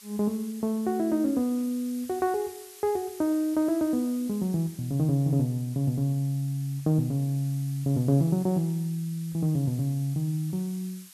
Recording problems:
background hiss; slope +5 dB per octave, SNR 20 dB

